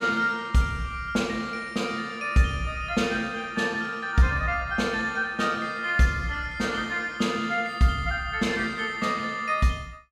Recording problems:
none

